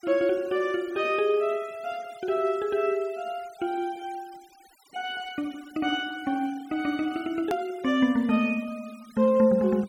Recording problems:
noise reduction artefacts; signal-to-artefact ratio 24 dB
edit click; at 7.5 s

